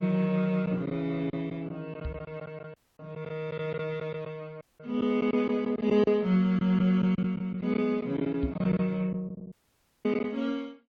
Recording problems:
lossy codec; MP3, then Opus, log-spectral distance 2 dB
lost packets; 8% of the sound replaced, filled with silence
microphone bump; at 2 s and at 8.5 s; peak 0 dB vs average level
audio cutting out; at 3 s, at 4.5 s and at 9.5 s for 0.5 s

